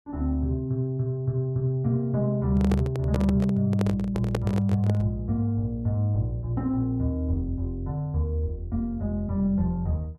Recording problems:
microphone handling noise; from 2.5 to 5 s; peak +1 dB vs average level

